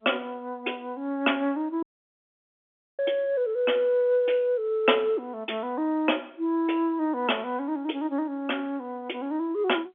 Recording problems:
telephone audio; 260 Hz to 3.4 kHz, G.711
audio cutting out; at 2 s for 1 s

